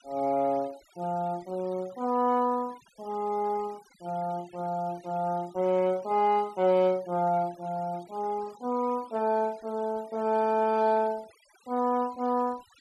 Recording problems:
noise reduction artefacts; signal-to-artefact ratio 25 dB

